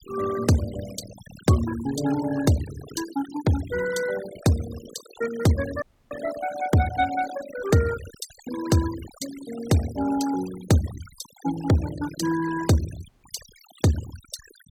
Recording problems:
noise reduction artefacts; signal-to-artefact ratio 15 dB
audio cutting out; at 6 s and at 13 s

